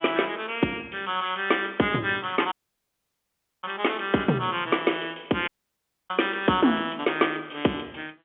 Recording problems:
phone line; 150 Hz to 3.4 kHz, G.711
audio cutting out; at 2.5 s for 1 s and at 5.5 s for 0.5 s

